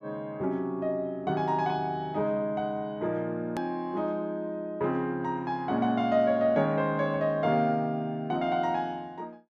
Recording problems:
hard cut with a click; at 3.5 s

